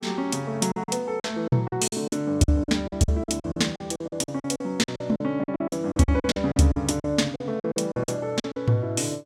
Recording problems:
packet loss; 17% of the sound replaced, filled with silence

